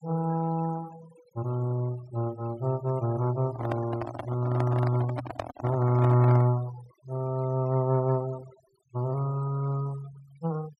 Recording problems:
noise reduction artefacts; signal-to-artefact ratio 19 dB
handling noise; from 3.5 to 6.5 s; peak 0 dB vs average level

